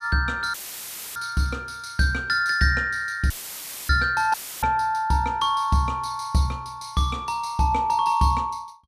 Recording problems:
audio cutting out; at 0.5 s for 0.5 s, at 3.5 s for 0.5 s and at 4.5 s; filled with static

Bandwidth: 14.5 kHz